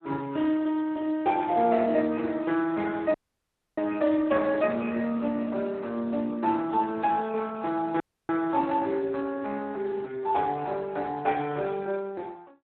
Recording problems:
telephone audio; 260 Hz to 3.4 kHz, Speex
audio cutting out; at 3 s for 0.5 s and at 8 s

